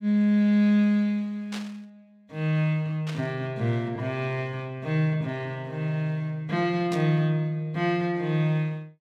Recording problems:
static burst; at 1.5 s, at 3 s and at 7 s; peak -7 dB vs average level

